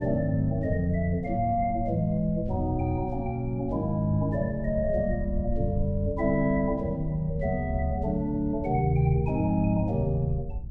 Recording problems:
low-frequency rumble; below 88 Hz, SNR 10 dB

